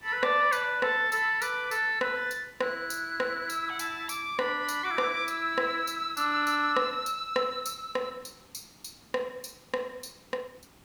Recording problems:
hiss; slope -4 dB per octave, SNR 27 dB

